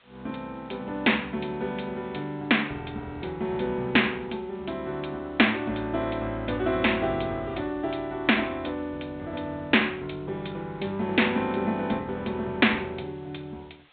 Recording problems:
treble missing; nothing above 4 kHz
background hiss; SNR 30 dB

